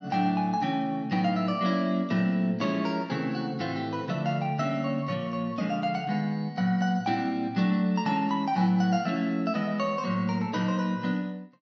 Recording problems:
none

